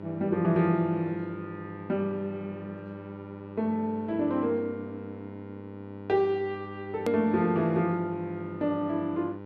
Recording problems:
electrical hum; 50 Hz, harmonics up to 1.9 kHz, SNR 13 dB
hard cut with a click; at 7 s

